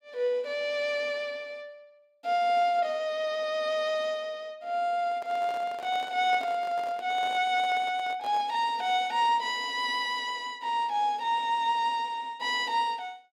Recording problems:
handling noise; from 5 to 8.5 s; peak -10 dB vs average level

